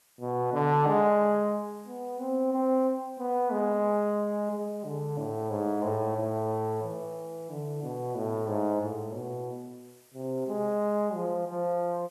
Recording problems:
background hiss; slope 0 dB per octave, SNR 29 dB

